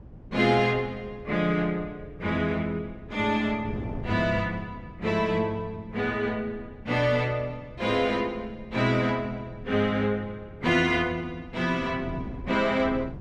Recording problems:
wind on the microphone; below 250 Hz, SNR 16 dB

